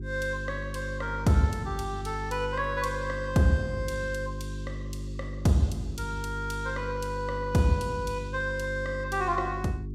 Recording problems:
mains hum; 50 Hz, harmonics up to 400 Hz, SNR 8 dB

